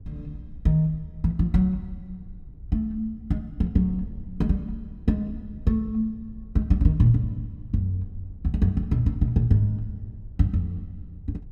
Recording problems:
wind noise; below 84 Hz, SNR 18 dB

